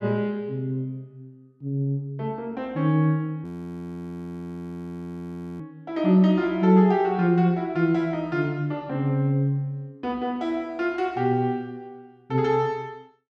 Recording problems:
audio freezing; at 3.5 s for 2 s

